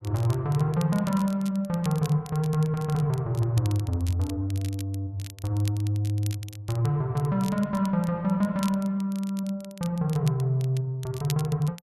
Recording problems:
crackle; vinyl, SNR 19 dB

